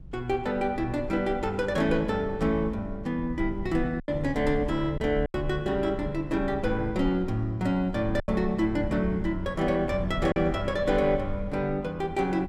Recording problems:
low-frequency rumble; below 82 Hz, SNR 12 dB
lost packets; 2% of the sound replaced, filled with silence

